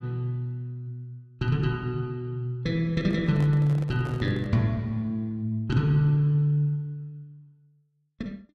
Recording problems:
microphone handling noise; from 3 to 4.5 s; peak -10 dB vs average level

